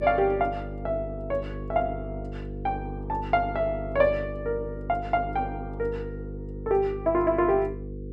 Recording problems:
hum; 50 Hz, harmonics up to 500 Hz, SNR 9 dB

